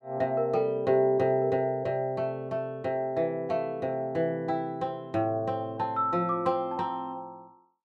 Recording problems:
none

